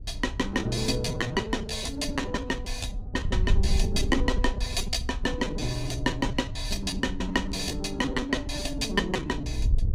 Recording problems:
wind noise; below 70 Hz, SNR 5 dB
lost packets; 14% of the sound replaced, filled with repeated pitch periods

